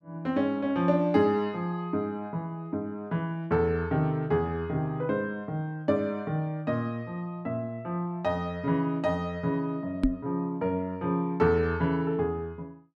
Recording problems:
microphone bump; at 10 s; peak +8 dB vs average level

